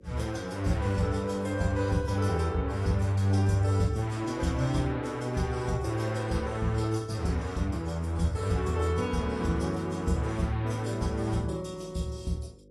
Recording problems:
codec artefacts; AAC, log-spectral distance 3 dB, nothing above 11.3 kHz
electrical hum; 50 Hz, harmonics up to 550 Hz, SNR 26 dB

